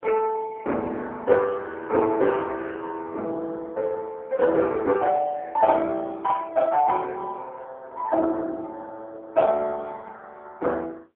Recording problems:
telephone audio; 280 Hz to 4 kHz, AMR-NB

